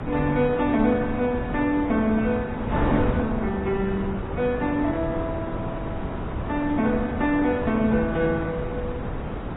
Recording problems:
lossy compression; Vorbis, then AAC, log-spectral distance 2 dB, nothing above 3.3 kHz
wind on the microphone; below 550 Hz, SNR 6 dB

